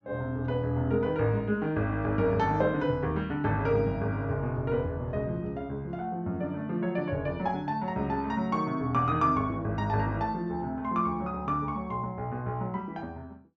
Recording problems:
treble cut off; nothing above 8 kHz

